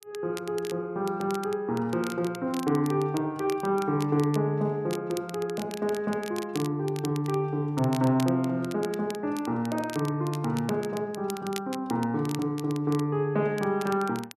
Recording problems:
crackle; vinyl, SNR 16 dB

